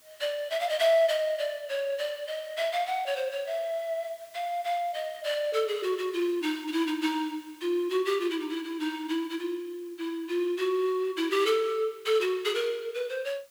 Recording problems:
hiss; slope +1 dB per octave, SNR 26 dB

